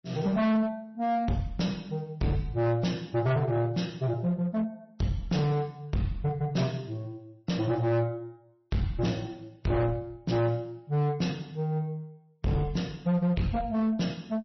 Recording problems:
codec artefacts; MP3, log-spectral distance 2 dB, nothing above 5.8 kHz
distorted audio; hard clipping, uneven, signal-to-distortion ratio 7 dB

